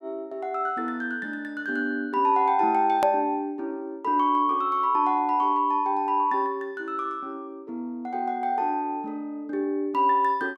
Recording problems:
edit click; at 3 s

